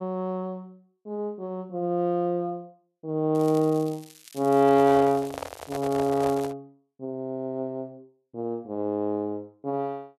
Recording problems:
crackling; from 3.5 to 6.5 s; loose cable, SNR 21 dB
microphone handling noise; from 4.5 to 6.5 s; peak -4 dB vs average level

